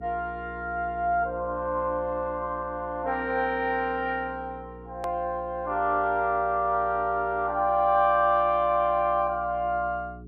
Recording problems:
hum; 60 Hz, harmonics up to 420 Hz, SNR 19 dB
click at an edit; at 5 s

